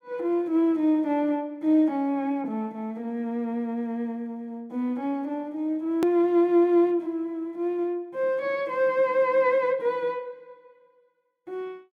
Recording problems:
edit click; at 6 s

